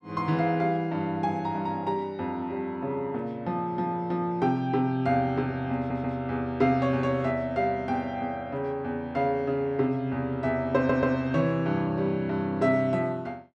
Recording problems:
audio stuttering; at 6 s and at 11 s

